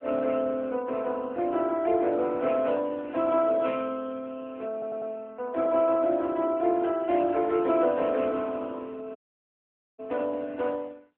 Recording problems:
phone line; 280 Hz to 3.8 kHz, AMR-NB
stutter; at 4.5 s
dropout; at 9 s for 1 s

